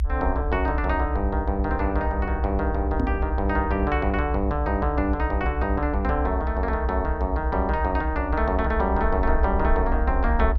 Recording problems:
low-frequency rumble; below 66 Hz, SNR 2 dB
microphone bump; at 3 s; peak +2 dB vs average level

